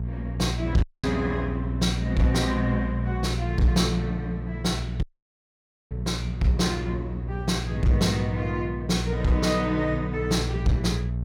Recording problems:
distortion; hard clipping, signal-to-distortion ratio 10 dB
hum; 60 Hz, harmonics up to 420 Hz, SNR 4 dB
dropout; at 1 s and at 5 s for 1 s

